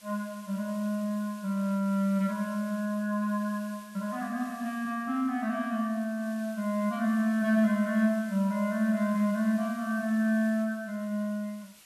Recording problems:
background hiss; slope +1 dB per octave, SNR 23 dB

